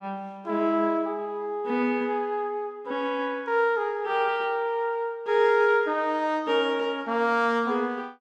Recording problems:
none

